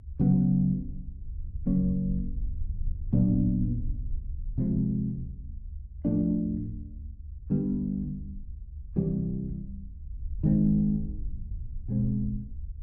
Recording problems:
rumble; below 74 Hz, SNR 11 dB

